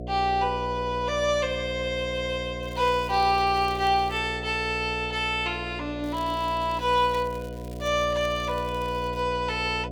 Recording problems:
hum; 60 Hz, harmonics up to 720 Hz, SNR 10 dB
crackling; from 2.5 to 4 s and from 6 to 9 s; loose cable, SNR 25 dB

